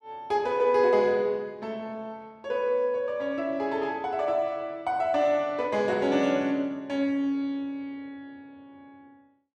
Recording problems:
none

